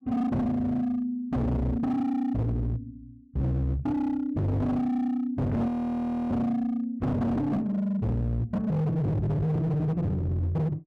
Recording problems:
distortion; hard clipping, signal-to-distortion ratio 7 dB
frozen audio; at 5.5 s for 0.5 s

